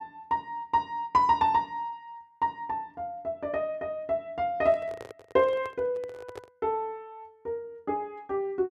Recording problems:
microphone handling noise; from 4.5 to 6.5 s; peak -8 dB vs average level

